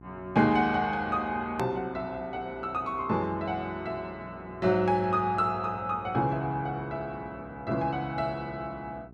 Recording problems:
electrical hum; 60 Hz, harmonics up to 1.1 kHz, SNR 21 dB
click at an edit; at 1.5 s

